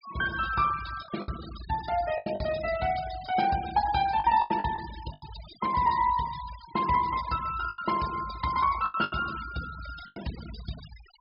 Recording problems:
treble cut off; nothing above 5.1 kHz
noise reduction artefacts; signal-to-artefact ratio 15 dB
packet loss; 7% of the sound replaced, filled with the last packet

